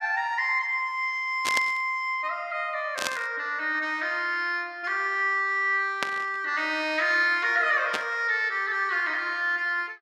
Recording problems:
burst of static; 4 times, first at 1.5 s; peak +2 dB vs average level

